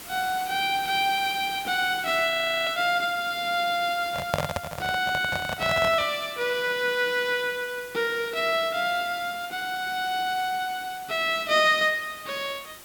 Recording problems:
hiss; slope -1 dB per octave, SNR 17 dB
frozen audio; at 2.5 s
microphone handling noise; from 4 to 6 s; peak +3 dB vs average level

